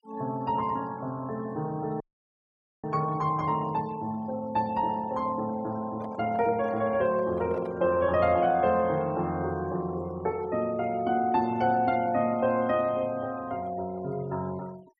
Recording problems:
noise reduction artefacts; signal-to-artefact ratio 24 dB
audio cutting out; at 2 s for 1 s
microphone handling noise; from 6 to 8 s; peak -9 dB vs average level

